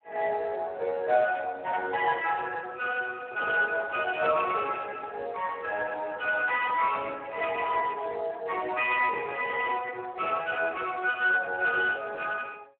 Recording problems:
phone line; 320 Hz to 2.2 kHz, Speex

